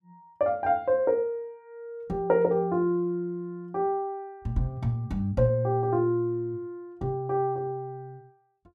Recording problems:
none

